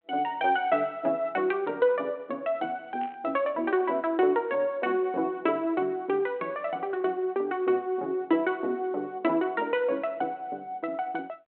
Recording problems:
telephone audio; 220 Hz to 3.3 kHz, G.726
static burst; at 3 s; peak -18 dB vs average level

